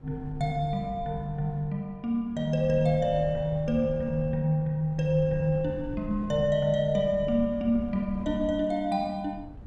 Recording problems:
wind noise; below 140 Hz, SNR 15 dB

